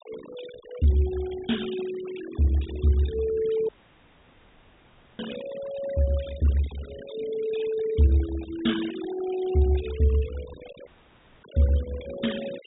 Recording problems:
low-pass filter; nothing above 4 kHz
denoising artefacts; signal-to-artefact ratio 17 dB
audio cutting out; at 3.5 s for 1.5 s and at 11 s for 0.5 s

